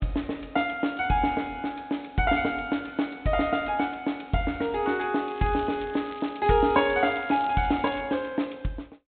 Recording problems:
low-pass filter; nothing above 4 kHz
crackling; from 5.5 to 8 s; loose cable, SNR 22 dB

